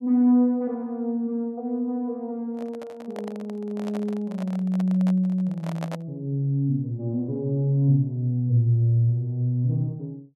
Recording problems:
microphone handling noise; from 2.5 to 6 s; peak -5 dB vs average level

